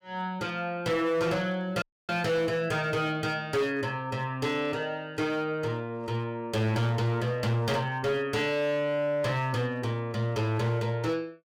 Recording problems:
distortion; hard clipping, signal-to-distortion ratio 11 dB
audio cutting out; at 2 s

